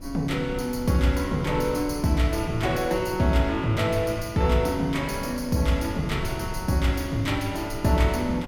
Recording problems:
wind noise; below 110 Hz, SNR 14 dB

